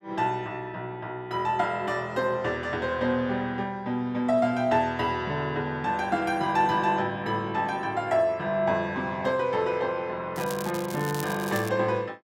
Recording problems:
crackle; from 10 to 12 s; loose cable, SNR 13 dB

